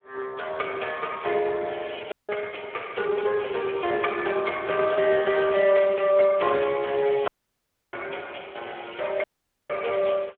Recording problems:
phone line; 340 Hz to 3.4 kHz, Speex
dropout; at 2 s, at 7.5 s for 0.5 s and at 9 s

